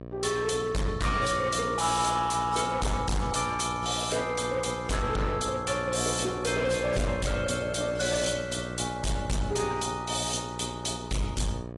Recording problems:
lossy codec; AAC, log-spectral distance 6 dB, nothing above 10.7 kHz
distorted audio; hard clipping, signal-to-distortion ratio 6 dB
hum; 60 Hz, harmonics up to 1.3 kHz, SNR 11 dB

